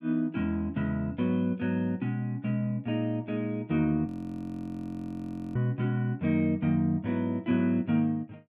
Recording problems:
audio freezing; at 4 s for 1.5 s

